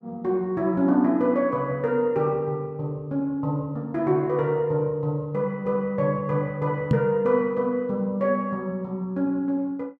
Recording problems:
microphone thump; at 7 s; peak +8 dB vs average level

